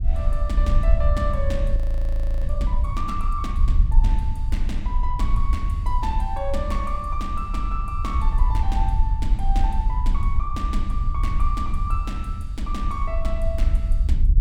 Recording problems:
low-frequency rumble; below 58 Hz, SNR -7 dB
audio freezing; at 2 s for 0.5 s

